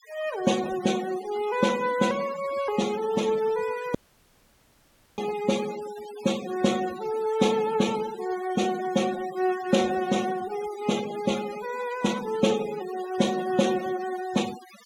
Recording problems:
denoising artefacts; signal-to-artefact ratio 14 dB
dropout; at 4 s for 1 s

